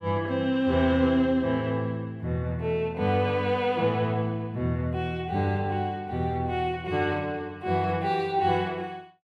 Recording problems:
none

